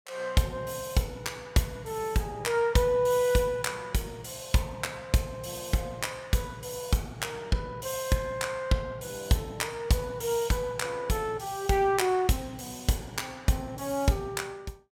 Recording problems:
none

